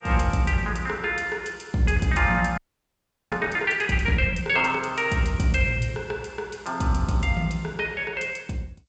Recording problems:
codec artefacts; G.722, log-spectral distance 3 dB, nothing above 7.8 kHz
frozen audio; at 2.5 s for 0.5 s

